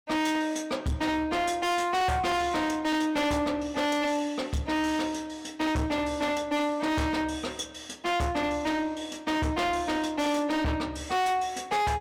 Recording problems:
distorted audio; hard clipping, uneven, signal-to-distortion ratio 7 dB

